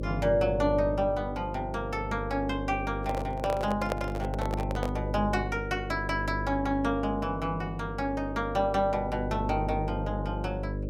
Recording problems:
mains hum; 50 Hz, harmonics up to 600 Hz, SNR 5 dB
microphone handling noise; from 3 to 5 s; peak +3 dB vs average level

